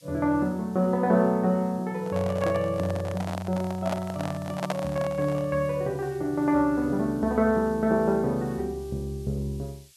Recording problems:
hiss; slope +6 dB per octave, SNR 27 dB
handling noise; from 2 to 5.5 s; peak +1 dB vs average level

